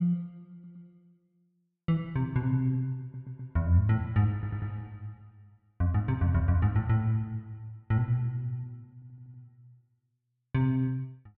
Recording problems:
stutter; 4 times, first at 0.5 s

